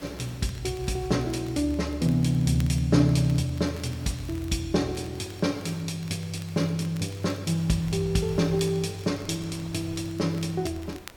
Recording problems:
background hiss; slope -3 dB per octave, SNR 23 dB
wind on the microphone; below 780 Hz, SNR 26 dB
crackle; vinyl, SNR 25 dB

